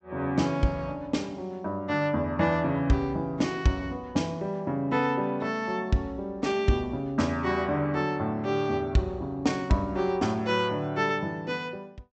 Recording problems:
low-pass filter; nothing above 8 kHz

